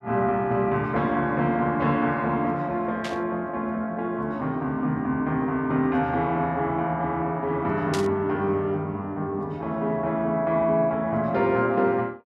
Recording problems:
burst of static; at 3 s and at 8 s; peak -2 dB vs average level

